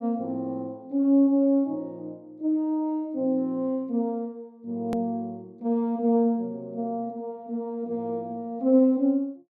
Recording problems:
hard cut with a click; at 5 s

